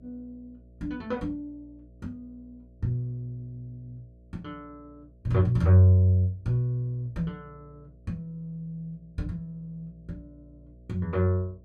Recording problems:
hum; 60 Hz, harmonics up to 660 Hz, SNR 27 dB

